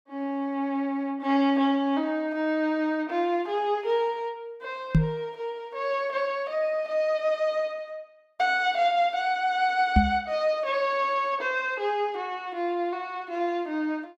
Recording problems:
microphone thump; at 5 s and at 10 s; peak +9 dB vs average level

